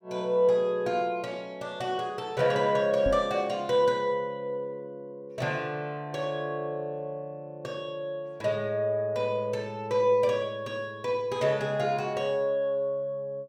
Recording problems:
microphone thump; at 3 s; peak -1 dB vs average level

